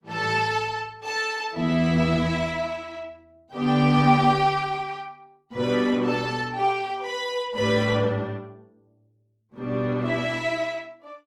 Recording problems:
lossy codec; Opus, log-spectral distance 3 dB

